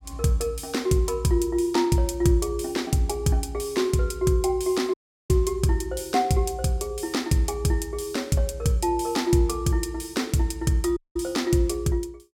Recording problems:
dropout; at 5 s and at 11 s

